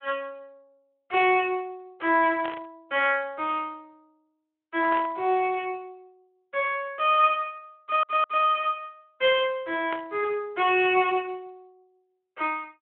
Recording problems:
phone line; 300 Hz to 3.4 kHz, Speex
burst of static; at 2.5 s, at 5 s and at 10 s; peak -5 dB vs average level
audio stuttering; at 8 s

